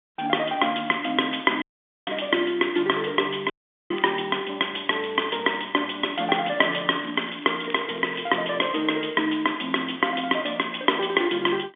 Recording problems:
phone line; 240 Hz to 3.5 kHz, G.711
audio cutting out; at 1.5 s and at 3.5 s
crackling; at 4 s, at 5 s and from 6.5 to 8.5 s; loose cable, SNR 20 dB

